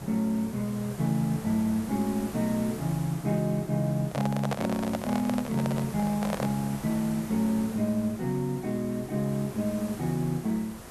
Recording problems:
hiss; slope -5 dB per octave, SNR 13 dB
microphone handling noise; from 4 to 6.5 s; peak +2 dB vs average level

